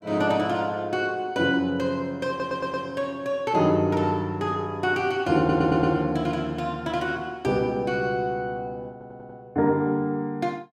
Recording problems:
stutter; at 2.5 s, at 5.5 s and at 9 s

